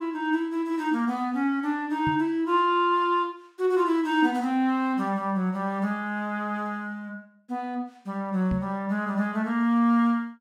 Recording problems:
microphone thump; at 2 s and at 8.5 s; peak -2 dB vs average level

